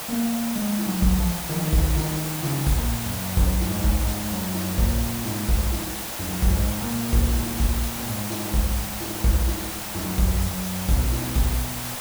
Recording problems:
hiss; SNR 4 dB

